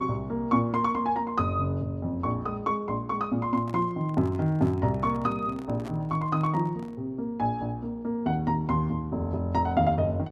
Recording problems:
hum; 60 Hz, harmonics up to 1.3 kHz, SNR 25 dB
microphone handling noise; from 3.5 to 7 s; peak -10 dB vs average level

